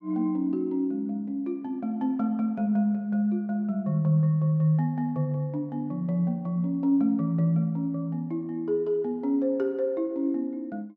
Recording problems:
none

